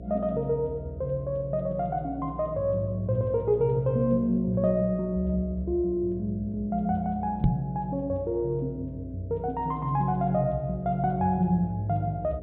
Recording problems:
treble missing; nothing above 4 kHz
hum; 60 Hz, harmonics up to 660 Hz, SNR 14 dB
knock on the microphone; at 7.5 s; peak +7 dB vs average level

